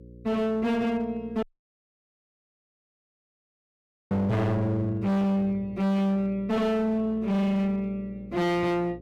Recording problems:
distorted audio; hard clipping, uneven, signal-to-distortion ratio 7 dB
hum; 60 Hz, harmonics up to 540 Hz, SNR 21 dB
dropout; at 1.5 s for 2.5 s

